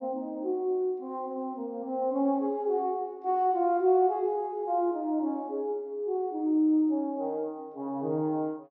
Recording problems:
none

